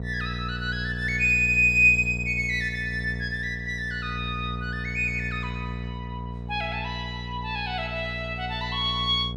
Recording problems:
hum; 60 Hz, harmonics up to 720 Hz, SNR 10 dB

